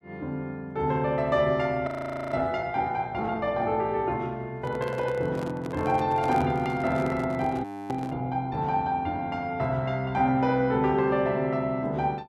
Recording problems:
frozen audio; at 2 s and at 7.5 s
handling noise; from 4.5 to 8 s; peak -6 dB vs average level

